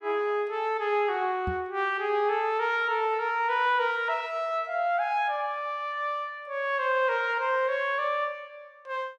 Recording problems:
microphone bump; at 1.5 s; peak -2 dB vs average level

